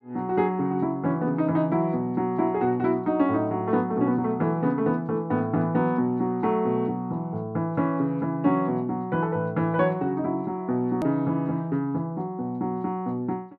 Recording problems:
click at an edit; at 11 s

